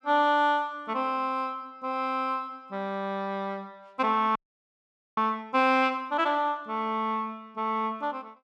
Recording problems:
audio freezing; at 4.5 s for 1 s

